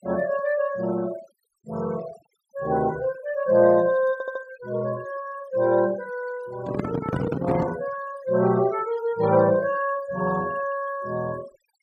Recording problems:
denoising artefacts; signal-to-artefact ratio 19 dB
stutter; at 4 s
handling noise; from 6.5 to 8 s; peak +2 dB vs average level

